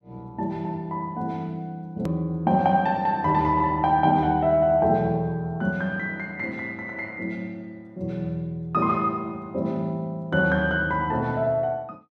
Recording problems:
edit click; at 2 s

